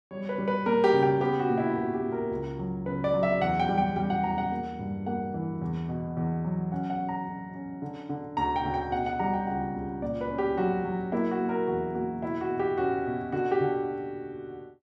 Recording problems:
none

